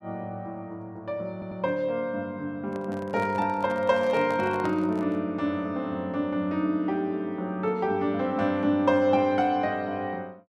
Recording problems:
stutter; at 1.5 s
handling noise; from 2.5 to 5 s; peak -5 dB vs average level

